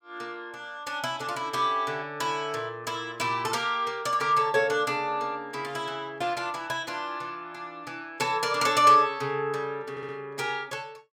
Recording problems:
stutter; at 10 s

